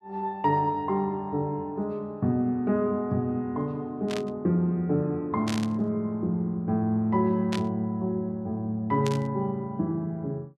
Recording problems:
burst of static; 4 times, first at 4 s; peak -3 dB vs average level

